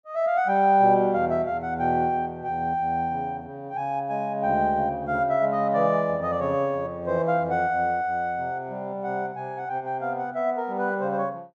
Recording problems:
none

